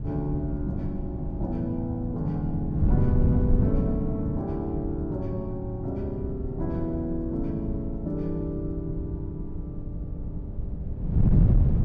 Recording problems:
wind noise; below 150 Hz, SNR -1 dB

